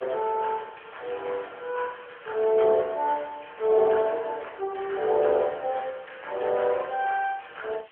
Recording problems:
telephone audio; 320 Hz to 3.3 kHz, AMR-NB
background hiss; SNR 27 dB

